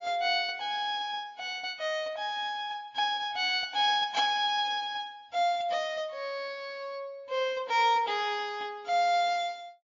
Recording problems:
lossy compression; MP3, log-spectral distance 2 dB, nothing above 6.9 kHz

